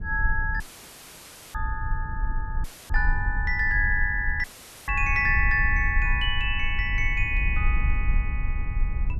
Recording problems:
low-frequency rumble; below 58 Hz, SNR 4 dB
dropout; at 0.5 s for 1 s, at 2.5 s and at 4.5 s; filled with static

